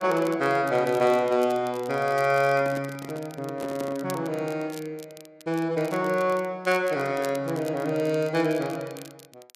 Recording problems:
crackling; vinyl, SNR 21 dB
handling noise; from 2.5 to 4 s; peak -6 dB vs average level

